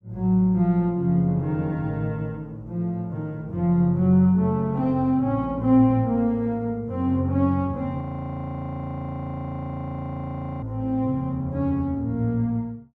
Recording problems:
audio freezing; at 8 s for 2.5 s

